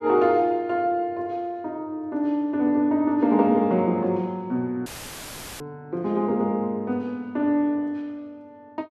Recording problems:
dropout; at 5 s for 0.5 s; filled with static

